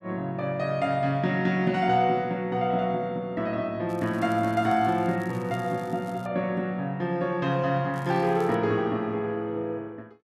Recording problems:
crackle; from 4 to 6.5 s and at 8 s; loose cable, SNR 27 dB

